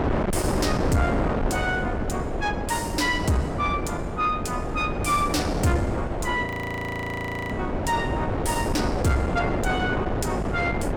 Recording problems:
distortion; soft clipping, signal-to-distortion ratio 11 dB
wind on the microphone; below 620 Hz, SNR 1 dB
frozen audio; at 6.5 s for 1 s

